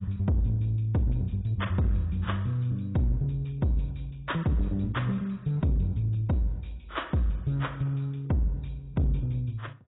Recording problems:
codec artefacts; AAC, log-spectral distance 5 dB, nothing above 3.8 kHz
distorted audio; soft clipping, signal-to-distortion ratio 12 dB

